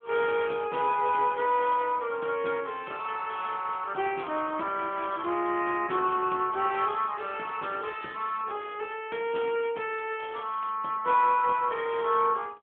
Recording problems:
phone line; 240 Hz to 3.4 kHz, AMR-NB

